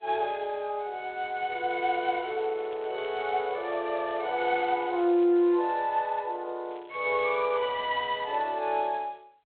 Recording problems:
telephone audio; 300 Hz to 3.5 kHz, G.726
crackling; from 2 to 5 s and from 6.5 to 8.5 s; loose cable, SNR 27 dB

